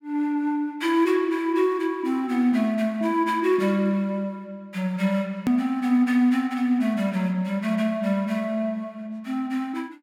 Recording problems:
hard cut with a click; at 5.5 s

